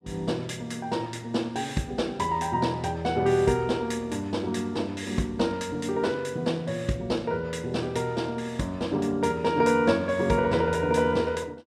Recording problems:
none

